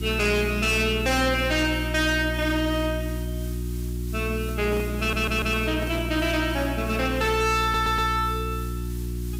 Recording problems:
distortion; hard clipping, uneven, signal-to-distortion ratio 6 dB
electrical hum; 60 Hz, harmonics up to 360 Hz, SNR 6 dB
hiss; slope +2 dB per octave, SNR 19 dB
microphone handling noise; from 4.5 to 6.5 s; peak -8 dB vs average level
audio stuttering; at 5 s and at 7.5 s

